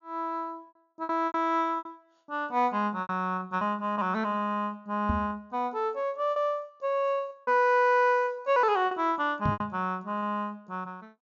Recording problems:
treble cut off; nothing above 6.9 kHz
packet loss; 8% of the sound replaced, filled with repeated pitch periods
microphone bump; at 5 s and at 9.5 s; peak +2 dB vs average level

